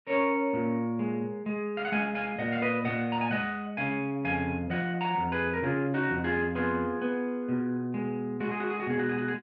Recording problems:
none

